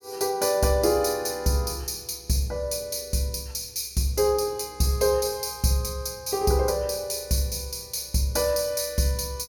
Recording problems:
none

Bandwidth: 17.5 kHz